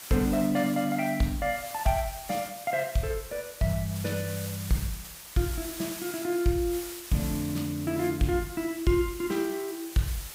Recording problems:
background hiss; slope +1 dB per octave, SNR 11 dB

